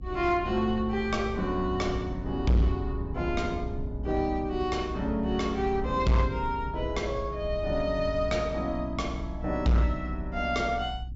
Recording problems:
low-pass filter; nothing above 8 kHz
distortion; hard clipping, signal-to-distortion ratio 10 dB
rumble; below 92 Hz, strongest tone 60 Hz, SNR 8 dB

